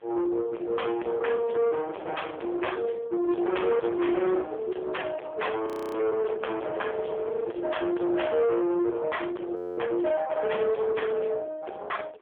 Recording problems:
phone line; 300 Hz to 3.4 kHz, AMR-NB
distortion; soft clipping, signal-to-distortion ratio 6 dB
wind on the microphone; below 1.2 kHz, SNR 17 dB
audio freezing; at 5.5 s and at 9.5 s

